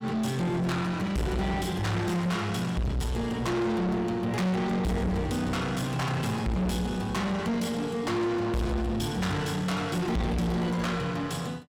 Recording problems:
distorted audio; soft clipping, signal-to-distortion ratio 6 dB

